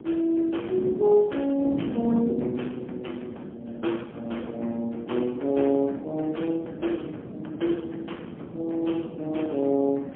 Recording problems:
phone line; 190 Hz to 3.3 kHz, AMR-NB, then MP3
wind noise; below 350 Hz, SNR 11 dB

